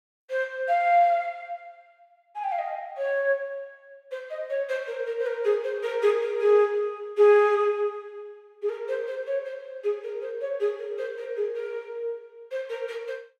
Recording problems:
none

